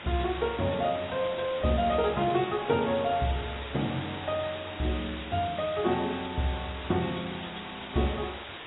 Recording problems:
lossy compression; AAC, log-spectral distance 19 dB, nothing above 3.8 kHz
background hiss; SNR 11 dB

